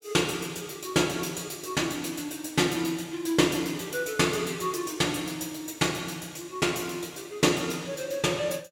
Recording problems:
none

